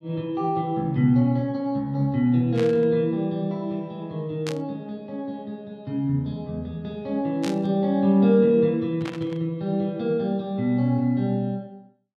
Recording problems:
burst of static; 4 times, first at 2.5 s; peak -6 dB vs average level

